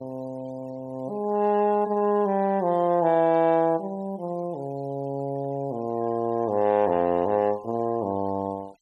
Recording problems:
denoising artefacts; signal-to-artefact ratio 27 dB

